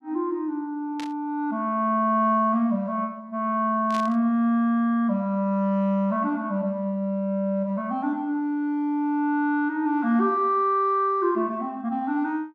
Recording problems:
burst of static; at 1 s and at 4 s; peak -8 dB vs average level

